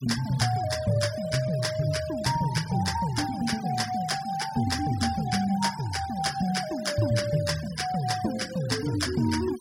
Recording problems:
noise reduction artefacts; signal-to-artefact ratio 14 dB

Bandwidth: 16.5 kHz